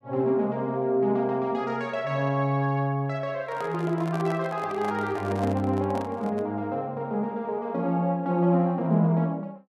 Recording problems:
microphone handling noise; from 3.5 to 6.5 s; peak -7 dB vs average level

